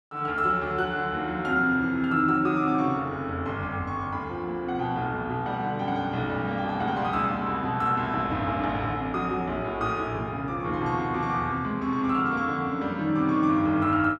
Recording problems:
none

